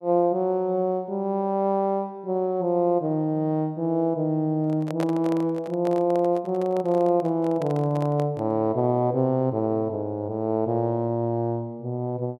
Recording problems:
handling noise; from 4.5 to 8.5 s; peak -4 dB vs average level

